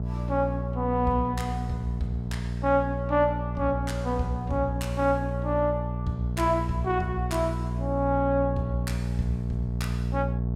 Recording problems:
hum; 60 Hz, harmonics up to 660 Hz, SNR 2 dB

